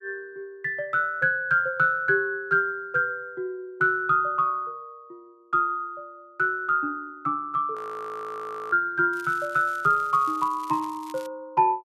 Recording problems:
frozen audio; at 8 s for 1 s
crackling; from 9 to 11 s; loose cable, SNR 24 dB

